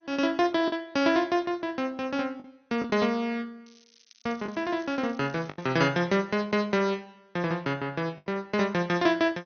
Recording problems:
codec artefacts; MP2, log-spectral distance 5 dB, nothing above 6.3 kHz
lost packets; 3% of the sound replaced, filled with the last packet
crackling; from 3.5 to 5.5 s; loose cable, SNR 28 dB

